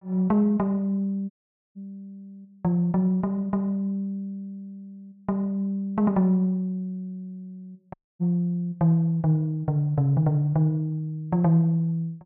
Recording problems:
dropout; at 1.5 s and at 8 s

